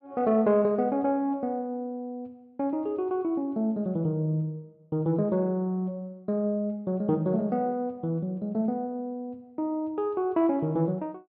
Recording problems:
none

